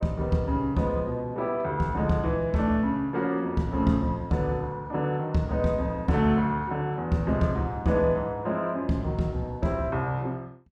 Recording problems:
none

